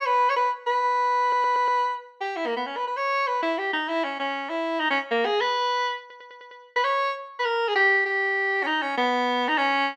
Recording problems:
audio stuttering; at 1 s and at 6 s

